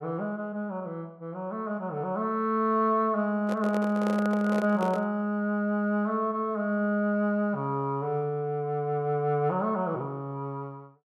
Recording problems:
handling noise; from 3.5 to 5 s; peak -3 dB vs average level

